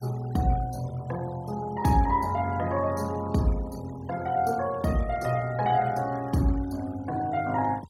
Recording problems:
denoising artefacts; signal-to-artefact ratio 21 dB

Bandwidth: 17 kHz